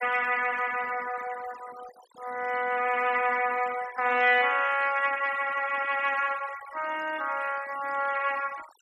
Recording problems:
denoising artefacts; signal-to-artefact ratio 17 dB

